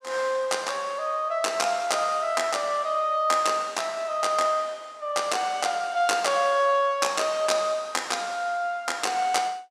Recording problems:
none

